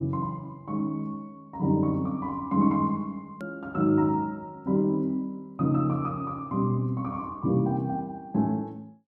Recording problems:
click at an edit; at 3.5 s

